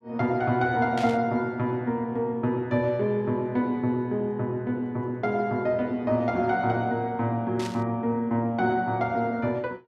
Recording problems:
static burst; at 1 s and at 7.5 s; peak -6 dB vs average level

